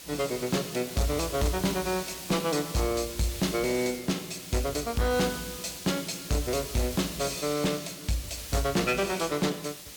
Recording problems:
distorted audio; hard clipping, signal-to-distortion ratio 10 dB
background hiss; SNR 10 dB

